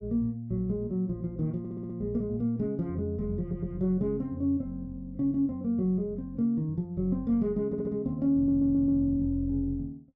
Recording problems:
stutter; 4 times, first at 1.5 s

